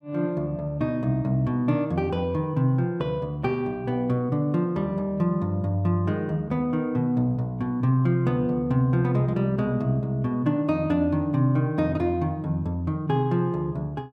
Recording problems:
none

